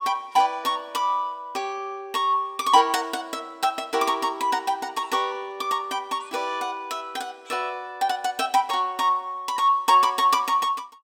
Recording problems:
none

